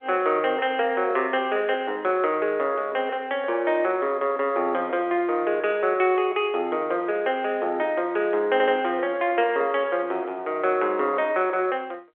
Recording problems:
telephone audio; 300 Hz to 3.4 kHz, G.711
audio stuttering; at 8.5 s

